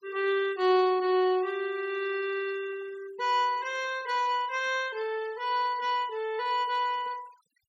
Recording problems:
noise reduction artefacts; signal-to-artefact ratio 21 dB

